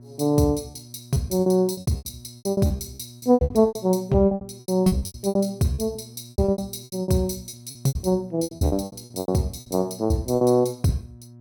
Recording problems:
electrical hum; 60 Hz, harmonics up to 600 Hz, SNR 22 dB
lost packets; 21% of the sound replaced, filled with repeated pitch periods

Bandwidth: 17 kHz